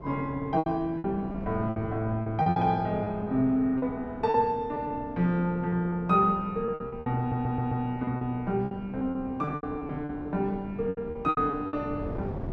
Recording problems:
hum; 60 Hz, harmonics up to 840 Hz, SNR 22 dB
wind on the microphone; below 390 Hz, SNR 15 dB
packet loss; 12% of the sound replaced, filled with repeated pitch periods
stutter; at 7 s

